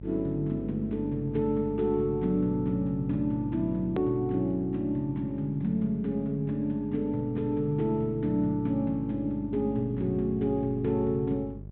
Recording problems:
treble missing; nothing above 4 kHz
hum; 50 Hz, harmonics up to 600 Hz, SNR 14 dB
hard cut with a click; at 4 s

